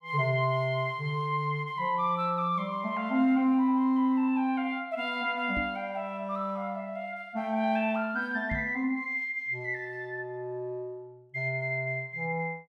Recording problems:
knock on the microphone; at 5.5 s and at 8.5 s; peak -3 dB vs average level

